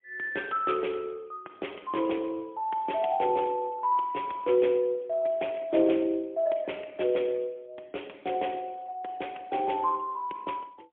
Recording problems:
telephone audio; 260 Hz to 3.4 kHz, AMR-NB, then MP3

